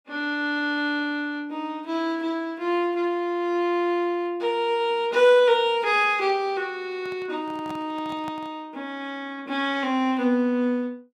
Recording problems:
microphone handling noise; from 7 to 8.5 s; peak -11 dB vs average level

